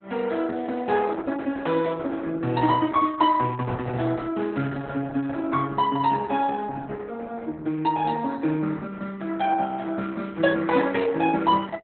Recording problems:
lossy compression; Opus, log-spectral distance 4 dB, nothing above 3.9 kHz

